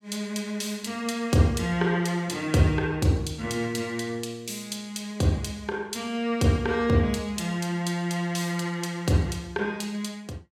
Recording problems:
none

